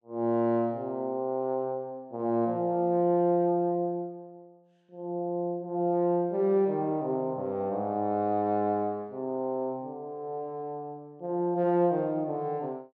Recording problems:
none

